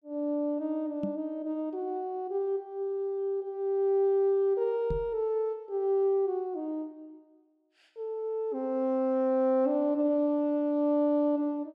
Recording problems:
microphone bump; at 1 s and at 5 s; peak -2 dB vs average level

